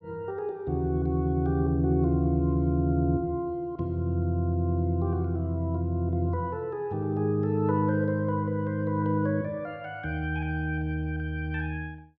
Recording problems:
none

